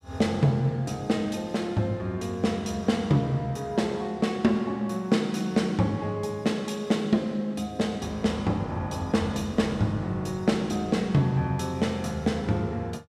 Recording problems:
none

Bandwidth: 15 kHz